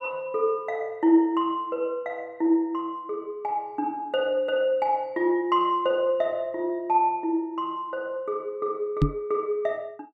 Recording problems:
knock on the microphone; at 9 s; peak +8 dB vs average level

